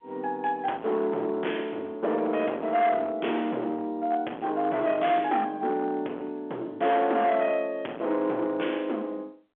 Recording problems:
telephone audio; 260 Hz to 3.4 kHz, G.711
distorted audio; hard clipping, signal-to-distortion ratio 11 dB

